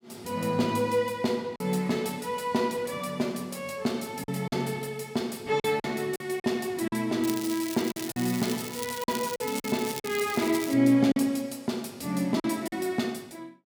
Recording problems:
lost packets; 5% of the sound replaced, filled with silence
crackling; from 7 to 11 s; loose cable, SNR 10 dB

